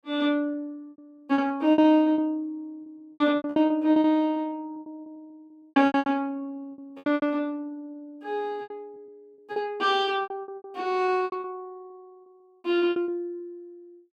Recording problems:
packet loss; 17% of the sound replaced, filled with repeated pitch periods

